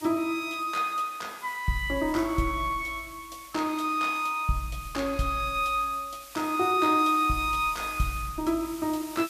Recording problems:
hiss; slope +3 dB per octave, SNR 18 dB

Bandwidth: 14.5 kHz